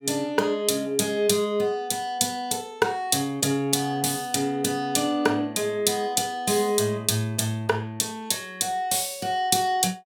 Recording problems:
none

